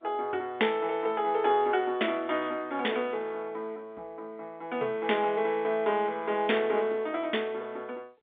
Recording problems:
telephone audio; 260 Hz to 3.6 kHz, G.711

